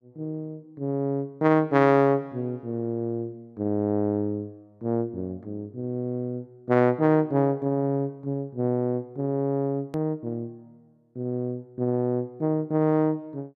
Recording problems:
hard cut with a click; at 10 s

